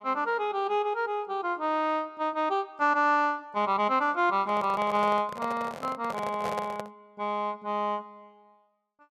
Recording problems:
microphone handling noise; from 4.5 to 7 s; peak -3 dB vs average level

